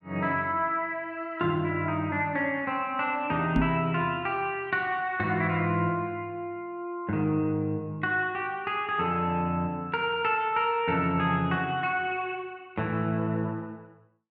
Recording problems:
microphone thump; at 3.5 s; peak +5 dB vs average level

